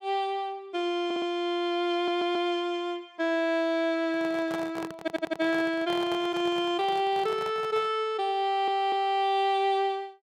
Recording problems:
stutter; 4 times, first at 1 s
microphone handling noise; from 4 to 8 s; peak -6 dB vs average level

